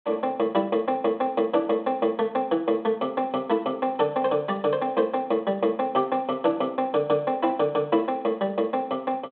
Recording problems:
phone line; 220 Hz to 3.5 kHz, G.726

